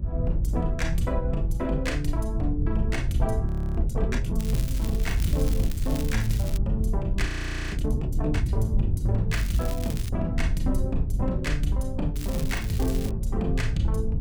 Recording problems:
low-frequency rumble; below 86 Hz, SNR -1 dB
audio freezing; at 3.5 s and at 7.5 s
crackling; from 4.5 to 6.5 s, at 9.5 s and at 12 s; loose cable, SNR 10 dB

